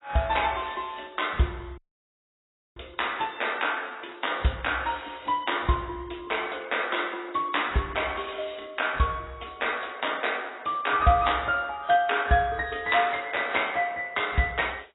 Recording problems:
codec artefacts; AAC, log-spectral distance 8 dB, nothing above 3.8 kHz
dropout; at 2 s for 1 s

